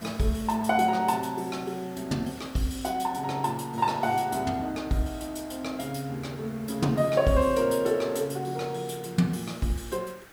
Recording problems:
background hiss; SNR 21 dB

